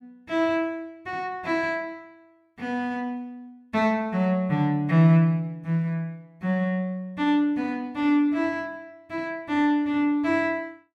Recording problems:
none

